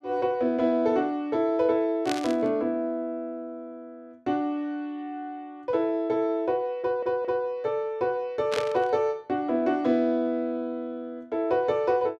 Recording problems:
static burst; at 2 s and at 8.5 s; peak -2 dB vs average level
audio stuttering; at 7 s

